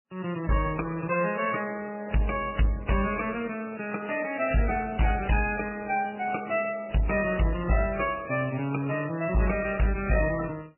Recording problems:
codec artefacts; MP3, then AAC, log-spectral distance 8 dB, nothing above 2.7 kHz
distorted audio; hard clipping, uneven, signal-to-distortion ratio 10 dB

